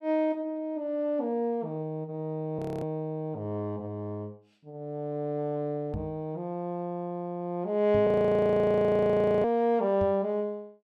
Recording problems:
audio freezing; at 2.5 s and at 8 s for 1.5 s
knock on the microphone; at 6 s, at 8 s and at 10 s; peak -3 dB vs average level

